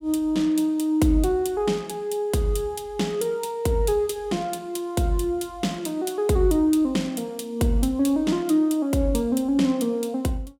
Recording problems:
none

